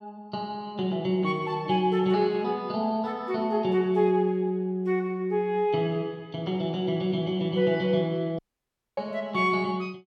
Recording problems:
dropout; at 8.5 s for 0.5 s

